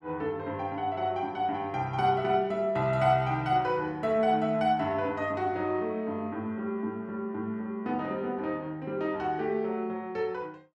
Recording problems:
none

